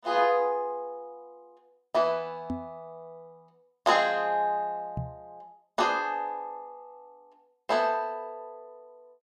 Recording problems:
microphone thump; at 2.5 s and at 5 s; peak -1 dB vs average level

